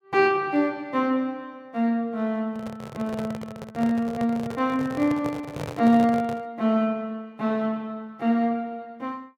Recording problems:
handling noise; from 2.5 to 6.5 s; peak -4 dB vs average level

